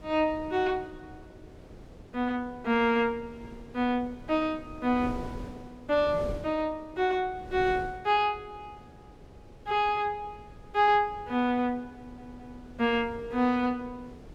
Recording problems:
wind on the microphone; below 420 Hz, SNR 18 dB
stutter; at 12 s

